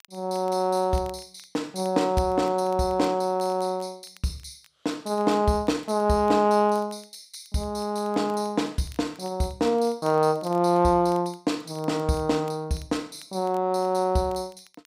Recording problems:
crackle; vinyl, SNR 29 dB

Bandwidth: 15.5 kHz